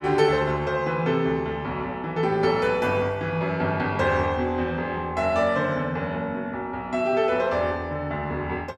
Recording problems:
none

